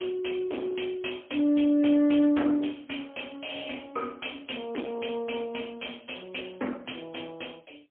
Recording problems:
telephone audio; 220 Hz to 3.4 kHz, AMR-NB, then MP3
distortion; hard clipping, uneven, signal-to-distortion ratio 8 dB

